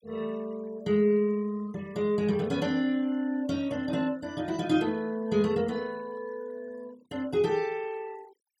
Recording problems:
noise reduction artefacts; signal-to-artefact ratio 24 dB

